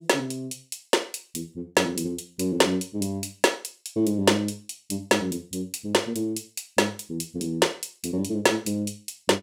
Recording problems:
none

